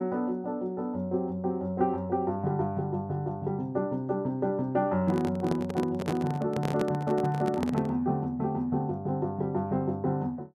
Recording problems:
microphone handling noise; from 5 to 8 s; peak +2 dB vs average level

